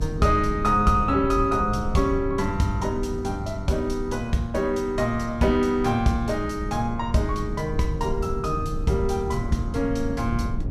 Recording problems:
low-frequency rumble; below 130 Hz, SNR 8 dB

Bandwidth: 14.5 kHz